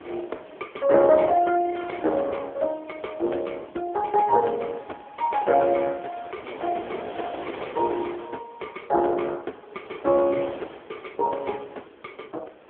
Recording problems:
phone line; 300 Hz to 3.4 kHz, AMR-NB
wind on the microphone; below 1 kHz, SNR 16 dB

